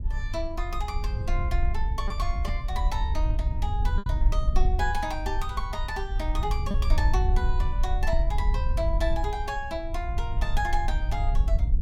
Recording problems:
wind on the microphone; below 62 Hz, SNR -4 dB
lost packets; 1.5% of the sound replaced, filled with repeated pitch periods

